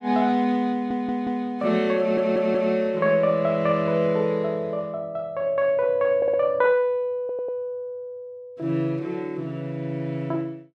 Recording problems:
stutter; 4 times, first at 0.5 s

